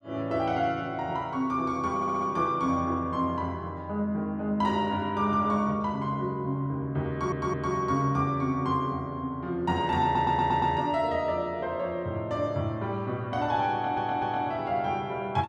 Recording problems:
stutter; 4 times, first at 2 s

